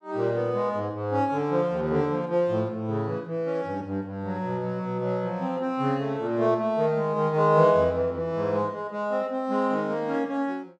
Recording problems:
none

